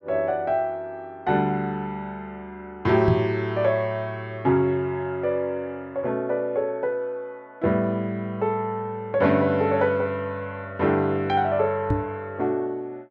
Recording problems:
microphone bump; at 3 s and at 12 s; peak +5 dB vs average level

